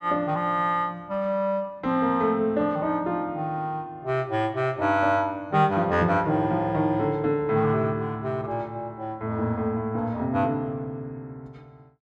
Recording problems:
none

